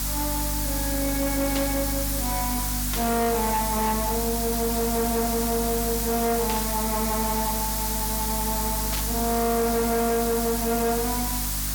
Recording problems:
distorted audio; hard clipping, uneven, signal-to-distortion ratio 10 dB
electrical hum; 50 Hz, harmonics up to 300 Hz, SNR 6 dB
hiss; SNR 1 dB
burst of static; 4 times, first at 1.5 s; peak -2 dB vs average level

